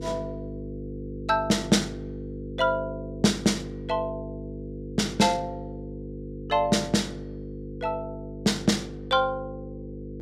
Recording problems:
electrical hum; 50 Hz, harmonics up to 500 Hz, SNR 11 dB

